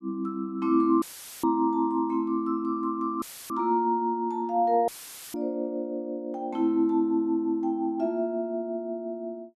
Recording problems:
audio cutting out; at 1 s, at 3 s and at 5 s; filled with static

